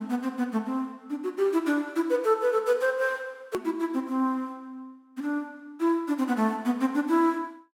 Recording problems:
edit click; at 3.5 s

